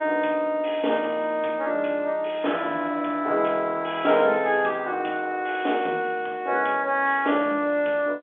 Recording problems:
telephone audio; 280 Hz to 3.6 kHz, G.711

